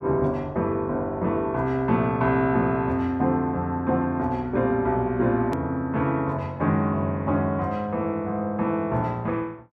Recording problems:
hard cut with a click; at 5.5 s

